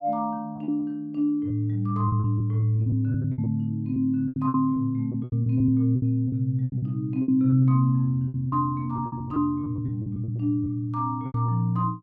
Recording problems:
lost packets; 14% of the sound replaced, filled with repeated pitch periods

